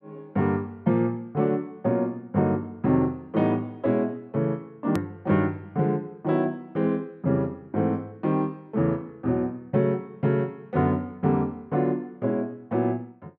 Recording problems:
hard cut with a click; at 5 s

